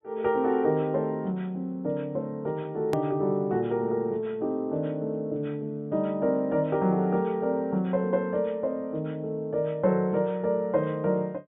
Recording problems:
low-pass filter; nothing above 4 kHz
hard cut with a click; at 3 s

